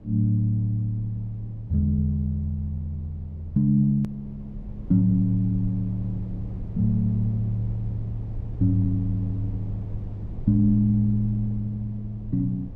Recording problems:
rumble; below 110 Hz, SNR 14 dB
click at an edit; at 4 s

